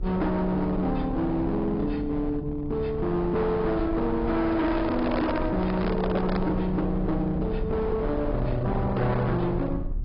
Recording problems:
low-pass filter; nothing above 5.2 kHz
lossy compression; AAC, log-spectral distance 2 dB
distorted audio; hard clipping, signal-to-distortion ratio 7 dB
low-frequency rumble; below 140 Hz, SNR 8 dB
microphone handling noise; from 4.5 to 6.5 s; peak +1 dB vs average level

